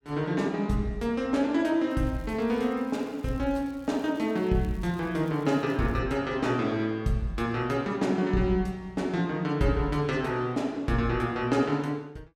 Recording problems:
crackling; from 2 to 6 s; loose cable, SNR 30 dB

